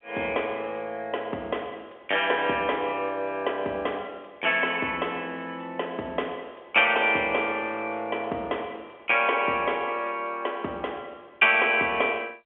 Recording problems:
phone line; 300 Hz to 3.3 kHz, G.711

